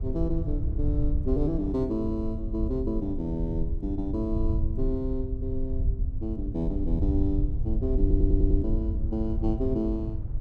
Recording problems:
low-frequency rumble; below 76 Hz, SNR 0 dB
wind noise; below 290 Hz, SNR 20 dB
stutter; at 8 s

